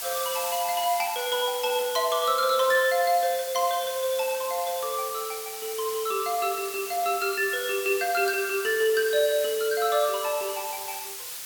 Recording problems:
hiss; slope +3 dB per octave, SNR 8 dB

